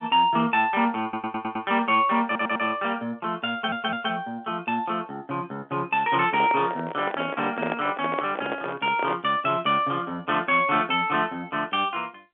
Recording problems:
telephone audio; 240 Hz to 3.5 kHz, G.711
stutter; at 1 s, at 2.5 s and at 3.5 s
handling noise; from 6.5 to 9 s; peak 0 dB vs average level

